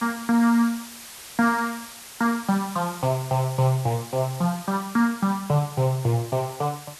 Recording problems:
hiss; slope +1 dB per octave, SNR 16 dB

